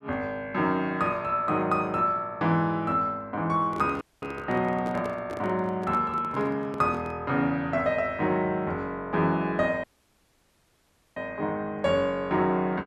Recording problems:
handling noise; from 3.5 to 7 s; peak -7 dB vs average level
audio cutting out; at 4 s and at 10 s for 1.5 s

